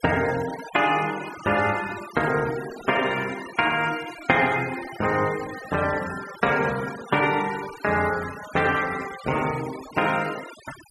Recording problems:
denoising artefacts; signal-to-artefact ratio 14 dB

